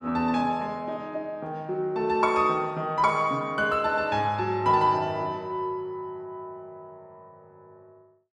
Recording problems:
none

